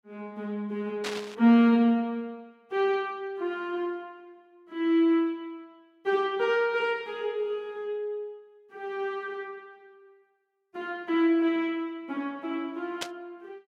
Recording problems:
burst of static; at 1 s and at 13 s; peak 0 dB vs average level

